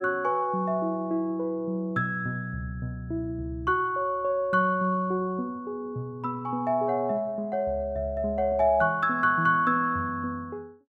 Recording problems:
none

